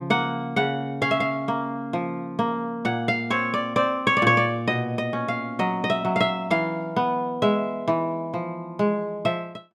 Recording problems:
none

